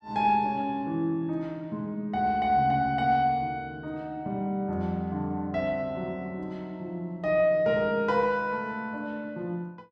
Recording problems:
none

